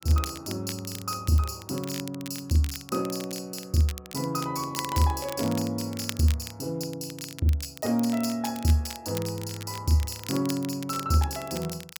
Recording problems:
crackle; vinyl, SNR 13 dB

